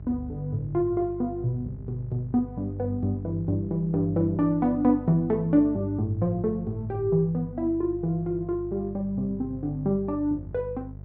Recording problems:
mains hum; 50 Hz, harmonics up to 600 Hz, SNR 14 dB

